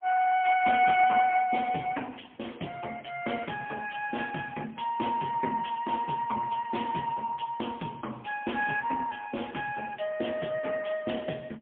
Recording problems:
phone line; 170 Hz to 3.3 kHz, AMR-NB, then MP3

